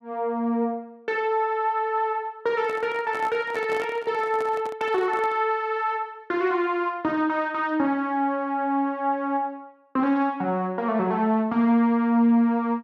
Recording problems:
microphone handling noise; from 2.5 to 5.5 s; peak -8 dB vs average level

